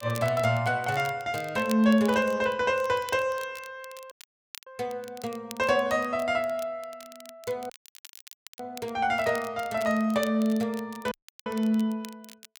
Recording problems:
crackle; vinyl, SNR 20 dB
dropout; at 4 s for 0.5 s, at 7.5 s for 1 s and at 11 s

